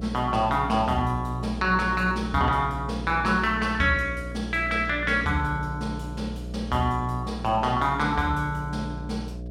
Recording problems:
electrical hum; 60 Hz, harmonics up to 660 Hz, SNR 10 dB

